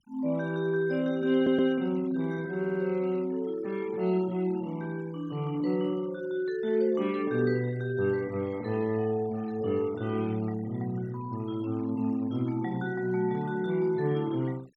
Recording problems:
noise reduction artefacts; signal-to-artefact ratio 24 dB
audio stuttering; at 1.5 s and at 2.5 s

